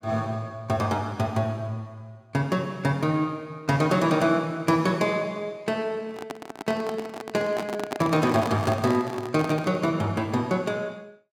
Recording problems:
microphone handling noise; from 6 to 10 s; peak -1 dB vs average level

